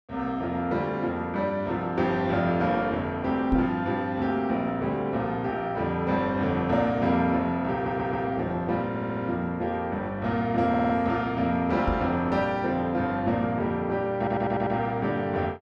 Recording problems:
microphone bump; at 3.5 s and at 12 s; peak +2 dB vs average level
stutter; 4 times, first at 7.5 s

